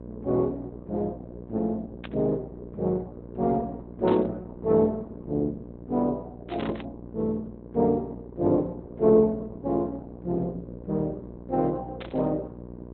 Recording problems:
lossy codec; Opus, log-spectral distance 2 dB
hum; 60 Hz, harmonics up to 1.1 kHz, SNR 15 dB
burst of static; 4 times, first at 2 s; peak -7 dB vs average level

